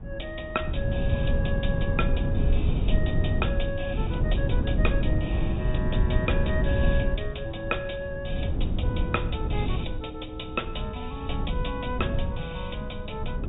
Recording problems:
low-pass filter; nothing above 4 kHz
wind on the microphone; below 130 Hz, SNR -4 dB

